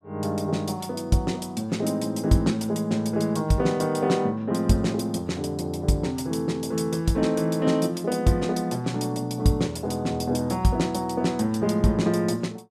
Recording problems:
none

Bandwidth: 14.5 kHz